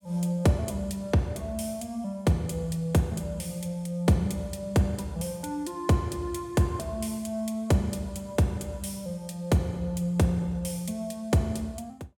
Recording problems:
none

